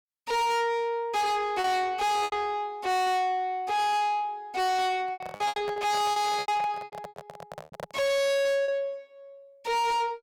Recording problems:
distorted audio; soft clipping, signal-to-distortion ratio 6 dB
lost packets; 6% of the sound replaced, filled with repeated pitch periods
handling noise; from 5 to 8 s; peak -6 dB vs average level

